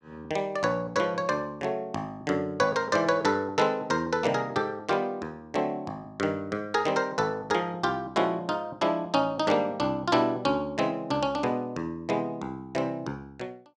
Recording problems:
none

